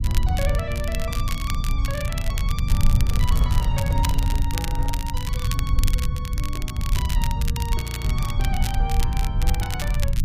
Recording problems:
low-frequency rumble; below 92 Hz, SNR -8 dB
crackling; vinyl, SNR 2 dB
handling noise; from 3 to 5 s; peak -2 dB vs average level
audio freezing; at 8 s

